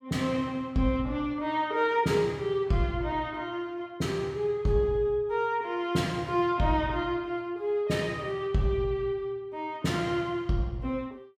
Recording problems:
none

